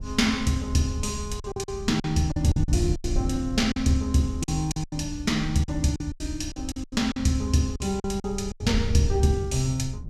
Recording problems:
wind on the microphone; below 110 Hz, SNR 7 dB
lost packets; 11% of the sound replaced, filled with silence

